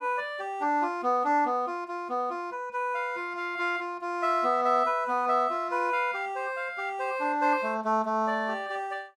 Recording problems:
none

